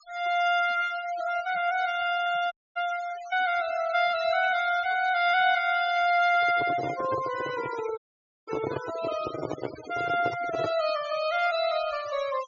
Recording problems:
treble cut off; nothing above 7 kHz
denoising artefacts; signal-to-artefact ratio 16 dB
dropout; at 2.5 s and at 8 s
handling noise; from 6.5 to 11 s; peak -2 dB vs average level

